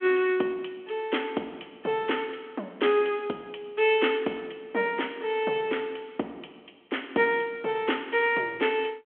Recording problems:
phone line; 240 Hz to 3.4 kHz, G.726

